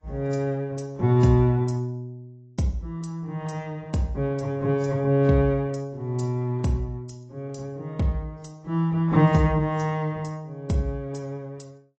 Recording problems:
codec artefacts; AAC, log-spectral distance 2 dB, nothing above 7.3 kHz

